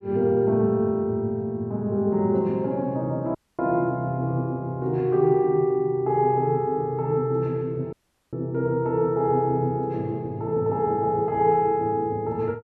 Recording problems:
audio cutting out; at 3.5 s and at 8 s

